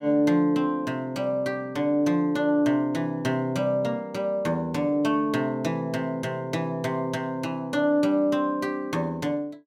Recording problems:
none

